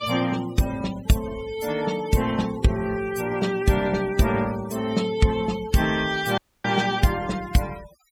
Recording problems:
denoising artefacts; signal-to-artefact ratio 16 dB
audio cutting out; at 6.5 s

